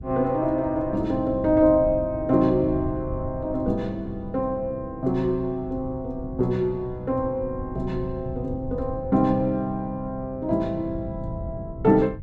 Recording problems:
wind on the microphone; below 140 Hz, SNR 13 dB

